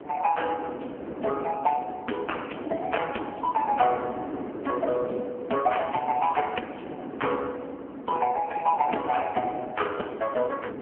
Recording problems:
telephone audio; 240 Hz to 3.2 kHz, AMR-NB
wind on the microphone; below 550 Hz, SNR 10 dB

